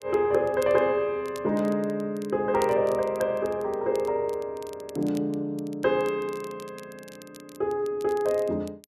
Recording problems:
crackle; vinyl, SNR 23 dB

